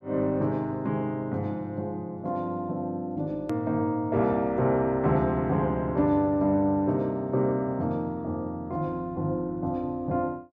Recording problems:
click at an edit; at 3.5 s

